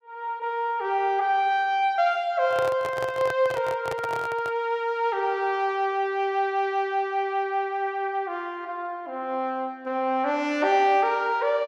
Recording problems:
handling noise; from 2.5 to 4.5 s; peak -4 dB vs average level

